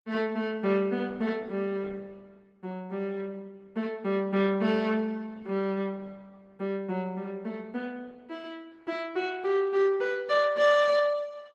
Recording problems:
lossy compression; Opus, log-spectral distance 2 dB

